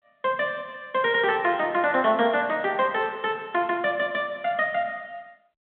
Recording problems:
telephone audio; 150 Hz to 3.5 kHz, G.726

